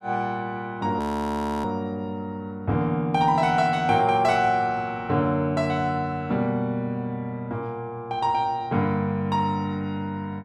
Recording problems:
audio freezing; at 1 s for 0.5 s

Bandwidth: 12.5 kHz